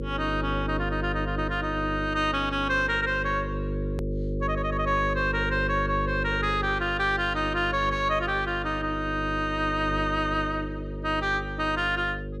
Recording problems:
hum; 50 Hz, harmonics up to 550 Hz, SNR 6 dB
edit click; at 4 s

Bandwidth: 12.5 kHz